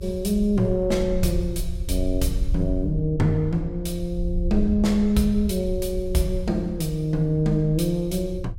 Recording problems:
low-frequency rumble; below 66 Hz, SNR 8 dB

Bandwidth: 16 kHz